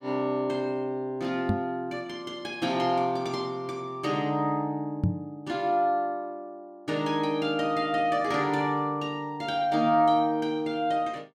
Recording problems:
microphone bump; at 1.5 s and at 5 s; peak +6 dB vs average level

